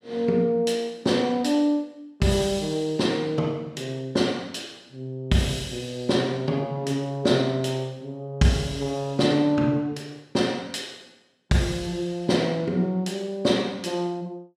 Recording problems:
none

